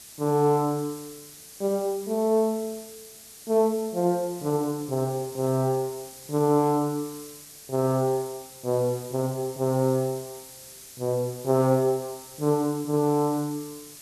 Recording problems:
background hiss; SNR 17 dB

